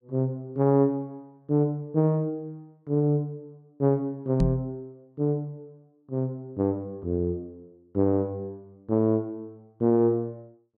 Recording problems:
microphone bump; at 4.5 s; peak +5 dB vs average level

